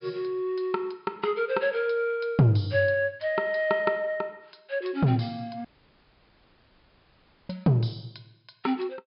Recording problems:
treble missing; nothing above 5.1 kHz
audio cutting out; at 5.5 s for 2 s

